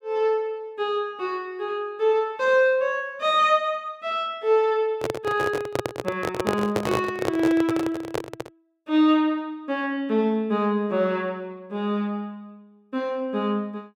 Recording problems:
microphone handling noise; from 5 to 8.5 s; peak +3 dB vs average level

